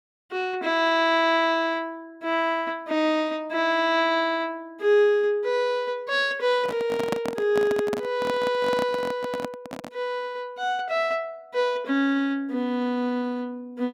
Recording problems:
handling noise; from 6.5 to 10 s; peak +1 dB vs average level

